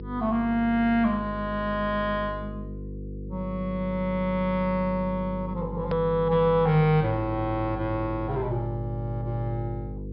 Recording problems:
treble missing; nothing above 5.2 kHz
hum; 50 Hz, harmonics up to 500 Hz, SNR 10 dB
hard cut with a click; at 6 s

